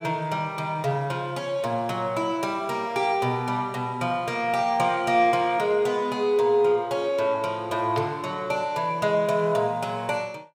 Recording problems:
none

